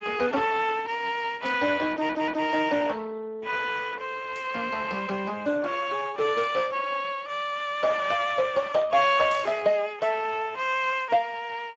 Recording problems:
lossy codec; Speex, log-spectral distance 4 dB
static burst; 4 times, first at 1.5 s; peak -13 dB vs average level
stutter; at 2 s

